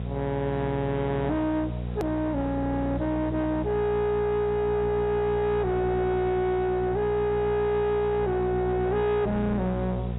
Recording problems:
codec artefacts; AAC, log-spectral distance 2 dB, nothing above 3.4 kHz
distortion; soft clipping, signal-to-distortion ratio 10 dB
hum; 60 Hz, harmonics up to 780 Hz, SNR 5 dB
hiss; SNR 27 dB
hard cut with a click; at 2 s

